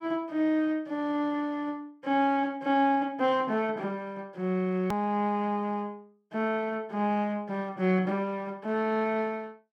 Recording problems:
edit click; at 5 s

